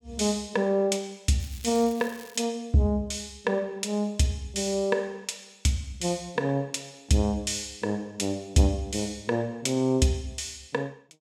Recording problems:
crackle; at 1.5 s; loose cable, SNR 20 dB

